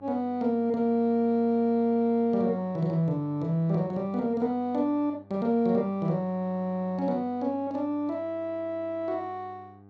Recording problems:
electrical hum; 50 Hz, harmonics up to 1.2 kHz, SNR 25 dB

